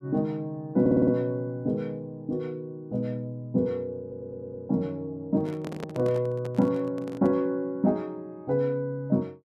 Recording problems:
stutter; at 1 s and at 4 s
handling noise; from 5.5 to 7.5 s; peak -3 dB vs average level

